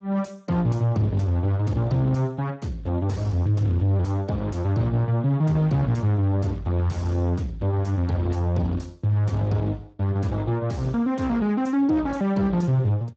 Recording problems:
lossy codec; Speex, log-spectral distance 2 dB
distorted audio; soft clipping, signal-to-distortion ratio 10 dB

